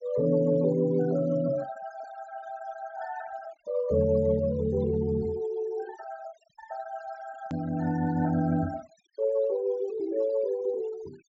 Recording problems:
low-pass filter; nothing above 7.6 kHz
noise reduction artefacts; signal-to-artefact ratio 26 dB
hard cut with a click; at 7.5 s

